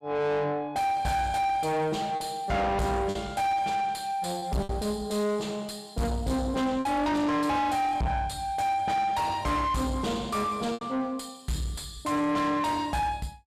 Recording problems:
distortion; soft clipping, signal-to-distortion ratio 6 dB
lost packets; 2% of the sound replaced, filled with repeated pitch periods

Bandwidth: 14.5 kHz